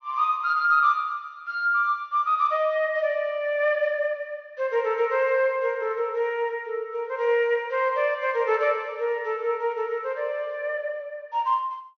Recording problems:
treble cut off; nothing above 6.1 kHz

